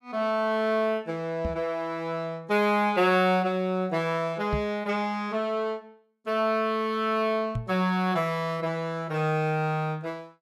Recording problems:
microphone bump; at 1.5 s, at 4.5 s and at 7.5 s; peak 0 dB vs average level

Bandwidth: 14.5 kHz